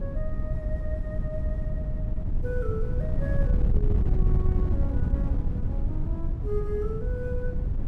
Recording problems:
wind noise; below 94 Hz, SNR -9 dB

